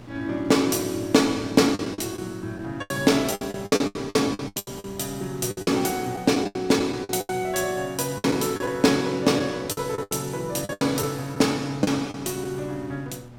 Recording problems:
electrical hum; 60 Hz, harmonics up to 1.2 kHz, SNR 22 dB
wind on the microphone; below 1 kHz, SNR 23 dB
lost packets; 12% of the sound replaced, filled with the last packet

